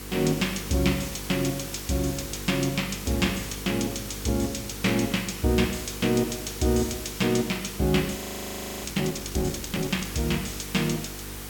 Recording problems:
hum; 50 Hz, harmonics up to 500 Hz, SNR 13 dB
hiss; slope 0 dB per octave, SNR 10 dB
audio freezing; at 8 s for 0.5 s

